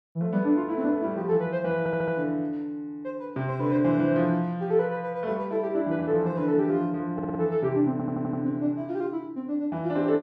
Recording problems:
audio stuttering; at 2 s, at 7 s and at 8 s

